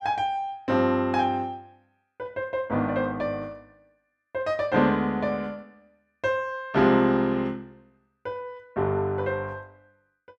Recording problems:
none

